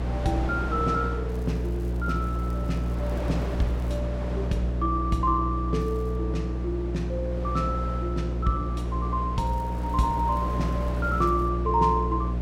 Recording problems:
hum; 60 Hz, harmonics up to 540 Hz, SNR 1 dB
wind noise; below 950 Hz, SNR 10 dB
crackle; from 1.5 to 4 s, at 6 s and from 9.5 to 11 s; loose cable, SNR 29 dB

